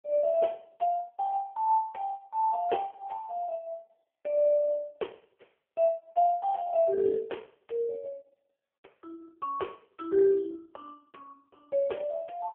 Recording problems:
phone line; 340 Hz to 3.3 kHz, AMR-NB

